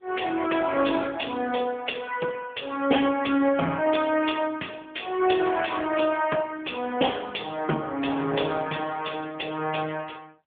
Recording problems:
telephone audio; 220 Hz to 3.4 kHz, AMR-NB

